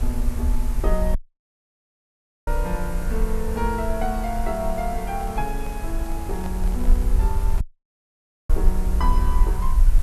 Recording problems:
background hiss; slope -5 dB per octave, SNR 11 dB
low-frequency rumble; below 52 Hz, SNR -3 dB
audio cutting out; at 1 s for 1.5 s and at 7.5 s for 1 s
handling noise; from 5 to 7.5 s; peak -5 dB vs average level

